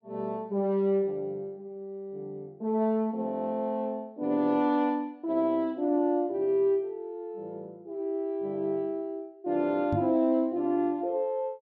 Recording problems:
microphone thump; at 10 s; peak +1 dB vs average level

